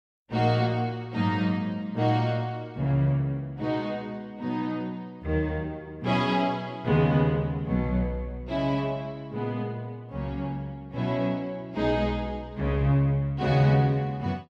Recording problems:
none

